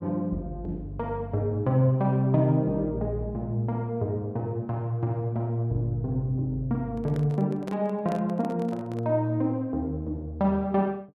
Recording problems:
handling noise; from 7 to 9 s; peak -6 dB vs average level

